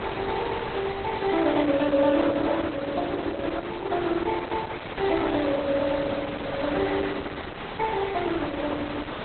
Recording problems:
lossy compression; Opus, log-spectral distance 11 dB, nothing above 4 kHz
hiss; SNR 8 dB
static burst; at 3 s, at 5 s and at 6.5 s; peak -11 dB vs average level

